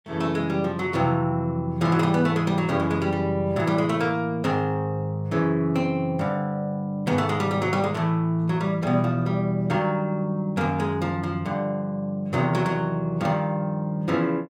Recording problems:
none

